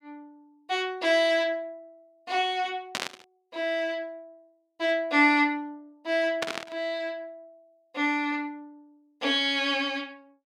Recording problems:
static burst; at 3 s and at 6.5 s; peak +1 dB vs average level

